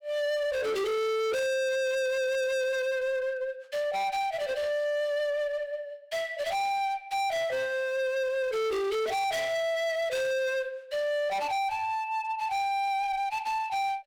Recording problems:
distorted audio; hard clipping, uneven, signal-to-distortion ratio 6 dB

